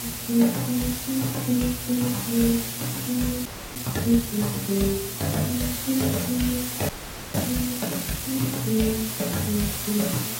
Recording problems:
lossy compression; AAC, log-spectral distance 12 dB
mains hum; 60 Hz, harmonics up to 720 Hz, SNR 18 dB
background hiss; slope 0 dB per octave, SNR 4 dB
frozen audio; at 3.5 s and at 7 s

